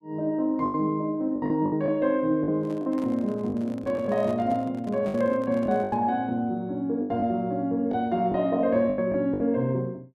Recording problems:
packet loss; 9% of the sound replaced, filled with the last packet
handling noise; from 2.5 to 6 s; peak -11 dB vs average level

